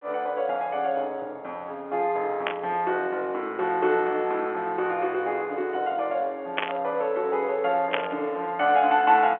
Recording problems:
phone line; 320 Hz to 3.4 kHz, G.711
static burst; at 2.5 s, at 6.5 s and at 8 s; peak +4 dB vs average level

